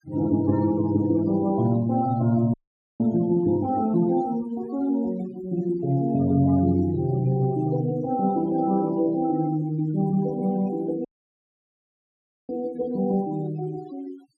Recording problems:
denoising artefacts; signal-to-artefact ratio 20 dB
audio cutting out; at 2.5 s and at 11 s for 1.5 s

